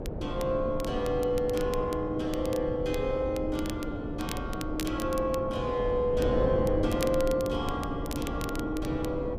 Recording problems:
wind on the microphone; below 430 Hz, SNR 5 dB
crackling; vinyl, SNR 15 dB

